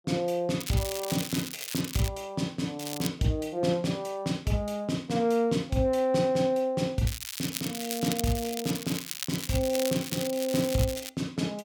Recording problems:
crackle; from 0.5 to 2 s, at 3 s and from 7 to 11 s; loose cable, SNR 7 dB

